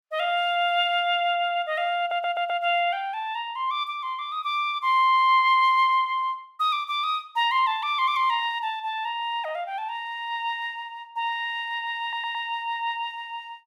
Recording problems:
stutter; at 2 s and at 12 s

